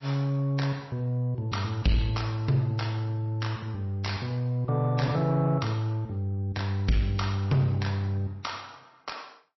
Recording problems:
codec artefacts; MP3, log-spectral distance 3 dB, nothing above 5.7 kHz
distorted audio; soft clipping, signal-to-distortion ratio 11 dB

